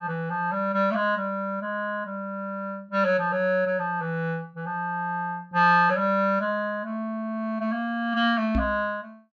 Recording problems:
low-pass filter; nothing above 8 kHz
microphone bump; at 8.5 s; peak +2 dB vs average level

